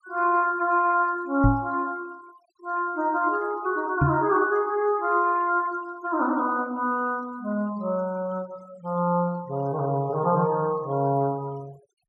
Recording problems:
noise reduction artefacts; signal-to-artefact ratio 25 dB
microphone thump; at 1.5 s and at 4 s; peak +6 dB vs average level

